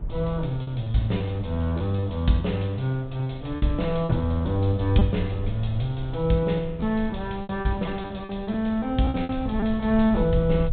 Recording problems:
treble missing; nothing above 4 kHz
low-frequency rumble; below 90 Hz, SNR 12 dB
wind on the microphone; below 460 Hz, SNR 23 dB
packet loss; 8% of the sound replaced, filled with repeated pitch periods

